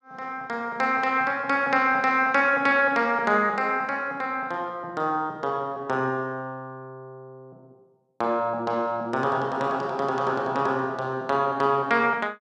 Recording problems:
none

